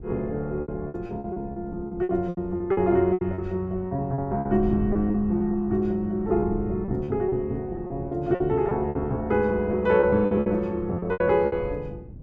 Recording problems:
wind noise; below 160 Hz, SNR 14 dB
packet loss; 13% of the sound replaced, filled with repeated pitch periods

